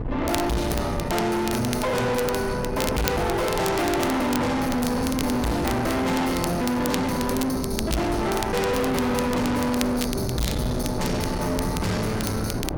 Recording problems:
distortion; soft clipping, signal-to-distortion ratio 6 dB
wind on the microphone; below 570 Hz, SNR 6 dB
crackle; vinyl, SNR 12 dB

